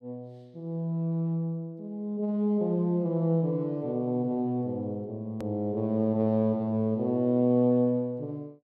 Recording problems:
click at an edit; at 5.5 s

